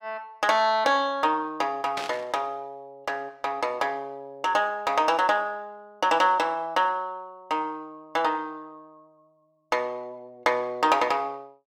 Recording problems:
burst of static; at 2 s; peak -3 dB vs average level

